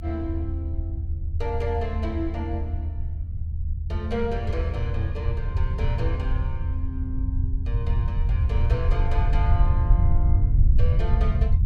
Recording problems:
low-frequency rumble; below 82 Hz, SNR -7 dB

